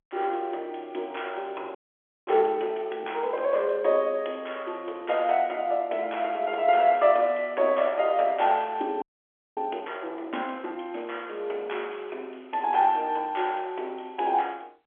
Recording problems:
phone line; 300 Hz to 3.4 kHz, G.711
audio freezing; at 2 s for 0.5 s and at 9 s for 0.5 s

